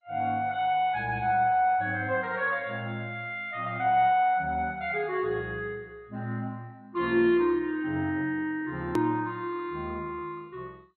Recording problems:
codec artefacts; MP2, log-spectral distance 2 dB, nothing above 13.1 kHz
click at an edit; at 9 s

